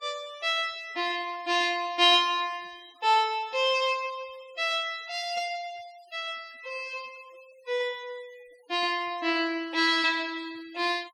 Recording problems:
denoising artefacts; signal-to-artefact ratio 26 dB

